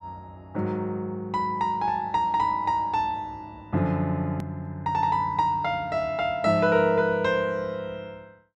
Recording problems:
edit click; at 4.5 s

